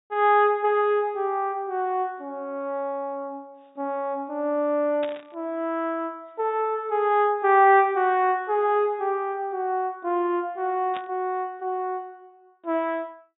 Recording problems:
treble cut off; nothing above 4 kHz
burst of static; at 5 s and at 11 s; peak -9 dB vs average level

